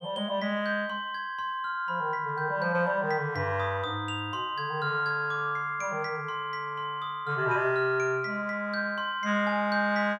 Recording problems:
none

